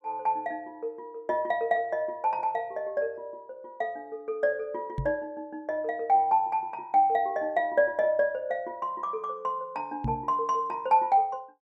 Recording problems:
microphone bump; at 5 s and at 10 s; peak +1 dB vs average level

